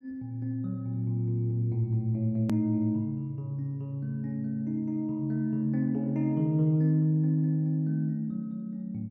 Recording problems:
edit click; at 2.5 s

